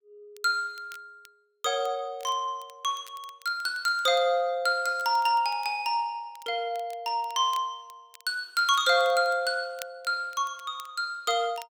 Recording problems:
crackle; vinyl, SNR 25 dB

